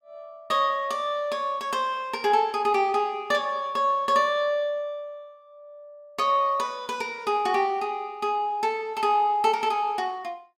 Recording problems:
none

